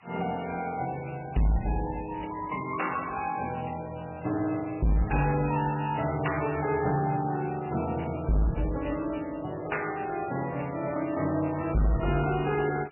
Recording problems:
lossy compression; MP3, log-spectral distance 12 dB, nothing above 2.7 kHz
distortion; hard clipping, signal-to-distortion ratio 7 dB
hiss; SNR 27 dB

